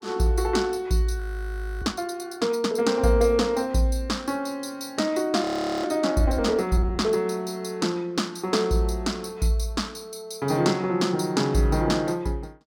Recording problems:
frozen audio; at 1 s for 0.5 s and at 5.5 s

